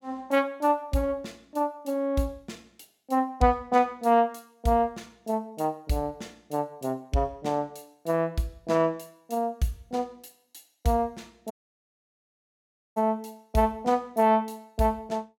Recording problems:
audio cutting out; at 12 s for 1.5 s

